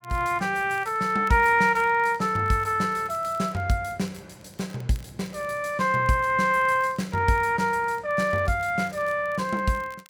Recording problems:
crackling; vinyl, SNR 30 dB

